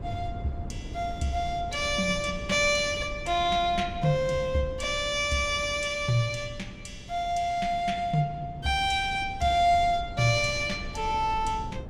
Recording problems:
wind on the microphone; below 190 Hz, SNR 14 dB

